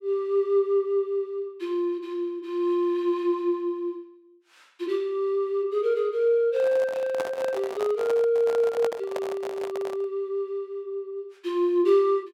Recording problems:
microphone handling noise; from 6.5 to 10 s; peak -2 dB vs average level

